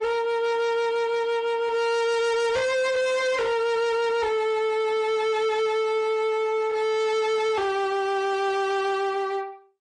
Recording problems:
lossy codec; Opus, then MP3, log-spectral distance 2 dB, nothing above 8.7 kHz
distorted audio; hard clipping, signal-to-distortion ratio 6 dB

